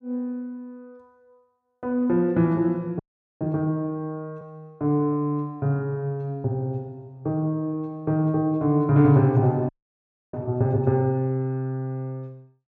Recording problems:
frozen audio; at 3 s and at 9.5 s for 0.5 s

